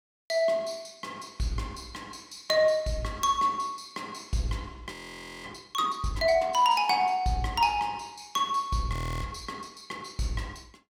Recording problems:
audio freezing; at 5 s for 0.5 s and at 9 s

